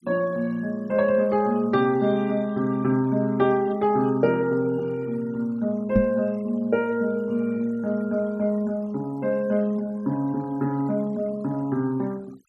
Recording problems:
denoising artefacts; signal-to-artefact ratio 25 dB
microphone bump; at 6 s; peak +5 dB vs average level

